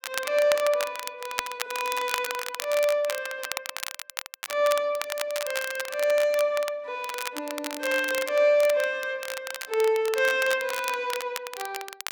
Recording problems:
crackle; vinyl, SNR 9 dB

